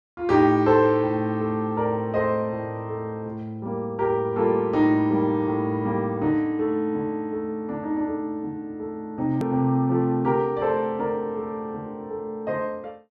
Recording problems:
hard cut with a click; at 9.5 s

